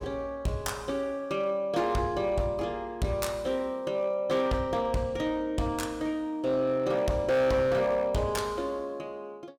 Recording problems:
distortion; hard clipping, uneven, signal-to-distortion ratio 11 dB

